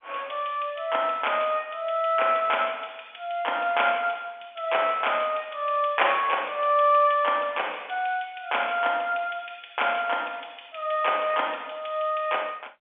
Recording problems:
telephone audio; 280 Hz to 3.4 kHz, G.711

